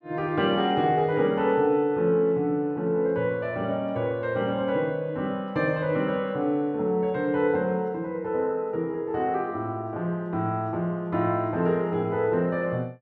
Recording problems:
none

